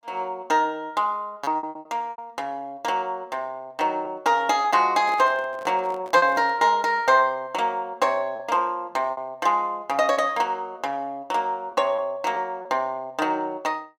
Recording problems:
lost packets; 5% of the sound replaced, filled with repeated pitch periods
microphone handling noise; from 5 to 6.5 s; peak -10 dB vs average level

